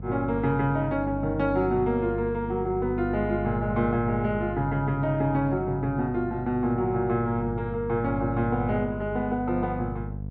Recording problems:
hum; 50 Hz, harmonics up to 500 Hz, SNR 9 dB

